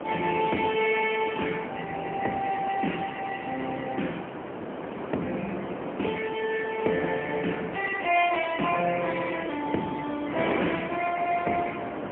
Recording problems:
phone line; 190 Hz to 3.2 kHz, AMR-NB, then MP3
wind on the microphone; below 920 Hz, SNR 7 dB

